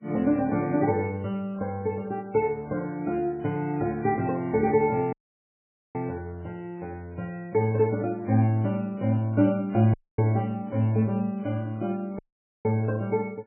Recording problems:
codec artefacts; MP3, log-spectral distance 2 dB
dropout; at 5 s for 1 s, at 10 s and at 12 s

